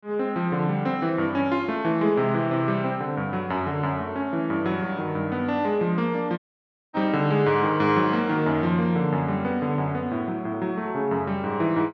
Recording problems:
dropout; at 6.5 s for 0.5 s

